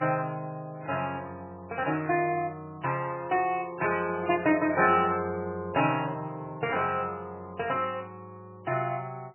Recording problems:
lossy codec; MP3, log-spectral distance 3 dB, nothing above 2.6 kHz

